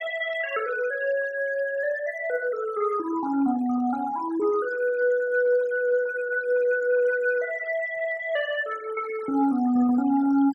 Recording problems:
noise reduction artefacts; signal-to-artefact ratio 20 dB

